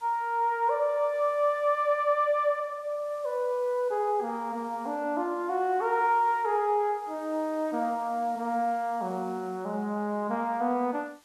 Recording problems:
hiss; slope 0 dB per octave, SNR 29 dB

